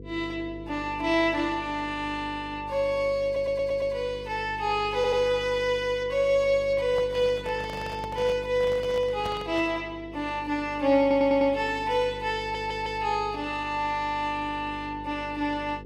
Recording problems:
lossy codec; Vorbis, log-spectral distance 2 dB, nothing above 14.3 kHz
hum; 50 Hz, harmonics up to 500 Hz, SNR 16 dB
stutter; 4 times, first at 3.5 s
microphone handling noise; from 6.5 to 9.5 s; peak -7 dB vs average level

